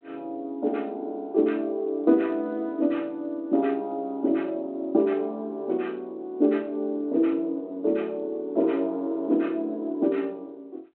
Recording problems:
telephone audio; 240 Hz to 3.3 kHz, G.726

